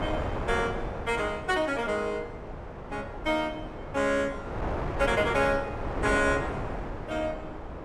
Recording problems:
hum; 50 Hz, harmonics up to 600 Hz, SNR 20 dB
wind on the microphone; below 820 Hz, SNR 7 dB

